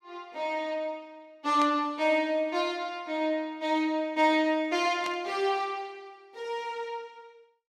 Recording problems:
burst of static; at 1.5 s and at 5 s; peak -6 dB vs average level

